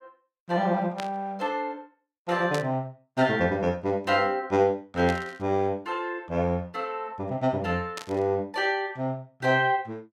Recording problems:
static burst; 4 times, first at 1 s; peak -4 dB vs average level

